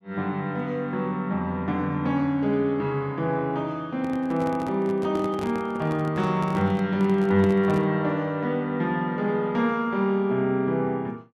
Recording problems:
microphone handling noise; from 4 to 8 s; peak -5 dB vs average level

